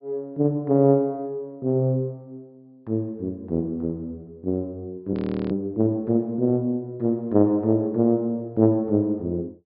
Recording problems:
treble cut off; nothing above 5.1 kHz
audio freezing; at 5 s

